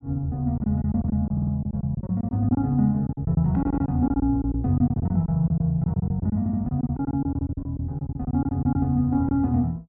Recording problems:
packet loss; 14% of the sound replaced, filled with silence
stutter; at 1.5 s, at 3.5 s and at 6.5 s

